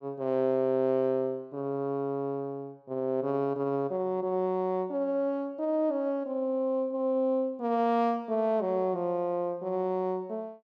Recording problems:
none

